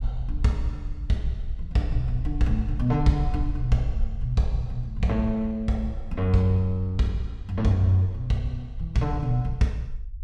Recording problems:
low-frequency rumble; below 54 Hz, SNR 10 dB

